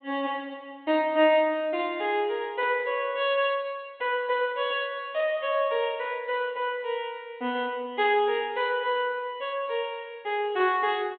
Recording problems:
treble cut off; nothing above 4 kHz

